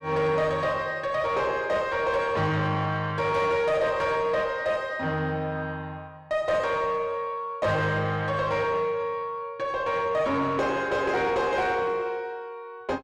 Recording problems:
distortion; soft clipping, signal-to-distortion ratio 10 dB

